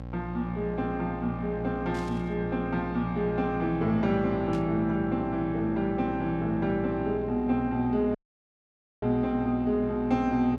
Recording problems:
electrical hum; 60 Hz, harmonics up to 1.1 kHz, SNR 12 dB
burst of static; at 2 s and at 4.5 s; peak -14 dB vs average level
dropout; at 8 s for 1 s

